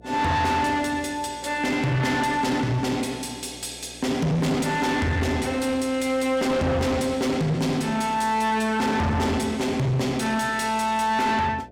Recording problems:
distortion; soft clipping, signal-to-distortion ratio 8 dB
electrical hum; 60 Hz, harmonics up to 720 Hz, SNR 24 dB

